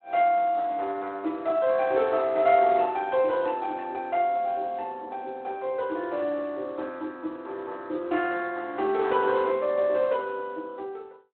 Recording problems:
telephone audio; 260 Hz to 3.5 kHz, Speex

